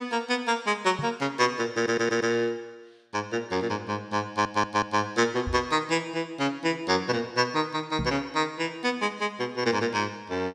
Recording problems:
knock on the microphone; at 1 s, at 5.5 s and at 8 s; peak -1 dB vs average level
audio stuttering; at 2 s and at 4.5 s

